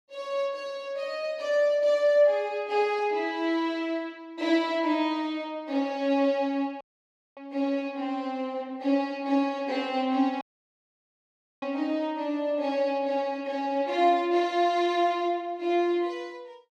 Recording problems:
audio cutting out; at 7 s for 0.5 s and at 10 s for 1 s

